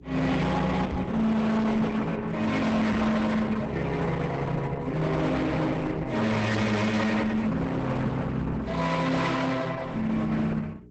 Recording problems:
lossy compression; Opus, log-spectral distance 3 dB, nothing above 8 kHz
distorted audio; hard clipping, signal-to-distortion ratio 7 dB
hum; 60 Hz, harmonics up to 420 Hz, SNR 21 dB
knock on the microphone; at 1 s and at 3 s; peak +3 dB vs average level

